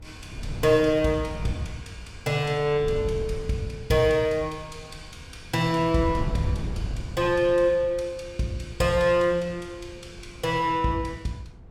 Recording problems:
wind noise; below 150 Hz, SNR 13 dB

